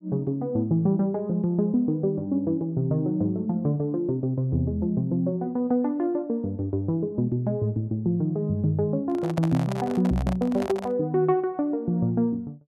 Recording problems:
handling noise; from 9 to 11 s; peak -4 dB vs average level

